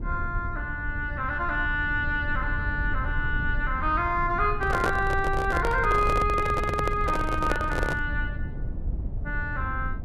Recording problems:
rumble; below 90 Hz, SNR 6 dB
microphone handling noise; from 4.5 to 8 s; peak +2 dB vs average level

